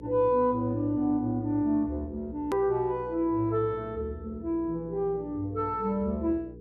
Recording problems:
hum; 60 Hz, harmonics up to 480 Hz, SNR 17 dB
hard cut with a click; at 2.5 s

